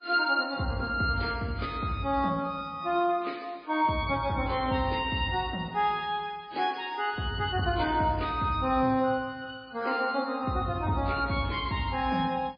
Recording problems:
codec artefacts; AAC, then MP3, log-spectral distance 3 dB, nothing above 4.2 kHz

